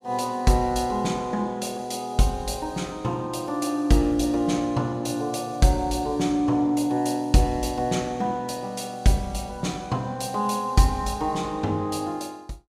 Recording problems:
none

